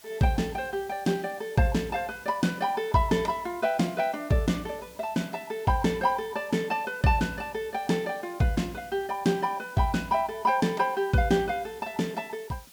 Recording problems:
background hiss; slope +1 dB per octave, SNR 23 dB

